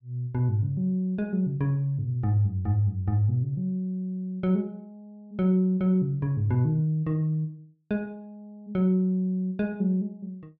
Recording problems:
none

